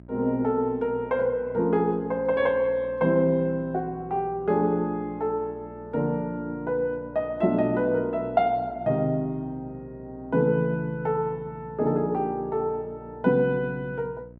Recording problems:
electrical hum; 60 Hz, harmonics up to 720 Hz, SNR 21 dB

